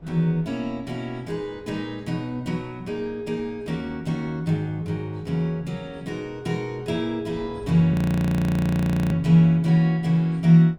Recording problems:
wind noise; below 370 Hz, SNR 24 dB
audio freezing; at 8 s for 1 s

